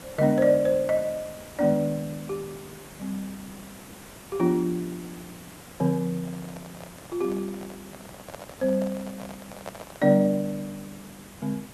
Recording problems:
background hiss; slope -4 dB per octave, SNR 18 dB
handling noise; from 6 to 10 s; peak -7 dB vs average level

